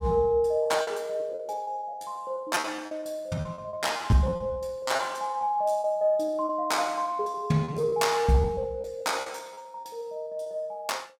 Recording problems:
packet loss; 16% of the sound replaced, filled with repeated pitch periods

